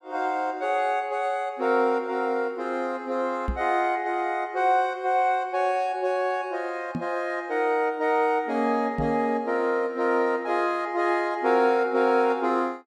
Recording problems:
microphone bump; at 3.5 s, at 7 s and at 9 s; peak 0 dB vs average level

